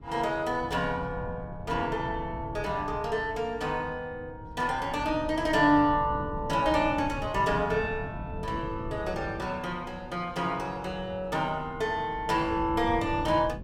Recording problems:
wind noise; below 180 Hz, SNR 12 dB

